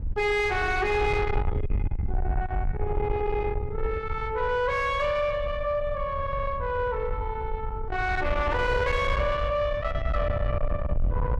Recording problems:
distorted audio; soft clipping, signal-to-distortion ratio 6 dB
wind on the microphone; below 110 Hz, SNR 4 dB

